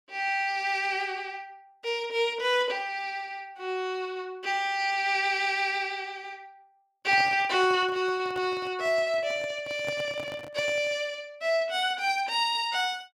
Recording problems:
handling noise; from 7 to 11 s; peak -7 dB vs average level

